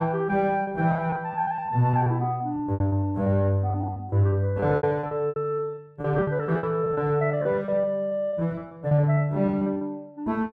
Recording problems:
lost packets; 18% of the sound replaced, filled with repeated pitch periods

